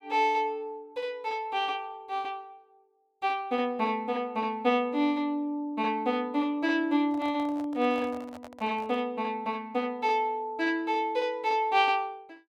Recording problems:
handling noise; from 7 to 9 s; peak -12 dB vs average level

